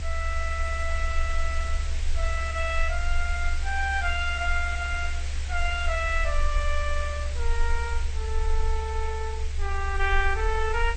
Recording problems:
lossy codec; AAC, then MP2, log-spectral distance 3 dB
background hiss; SNR 10 dB
low-frequency rumble; below 70 Hz, strongest tone 20 Hz, SNR 0 dB

